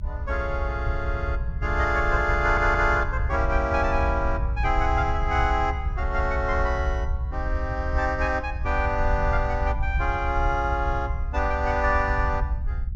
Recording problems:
treble missing; nothing above 8 kHz
rumble; below 70 Hz, SNR 3 dB
audio stuttering; at 2.5 s

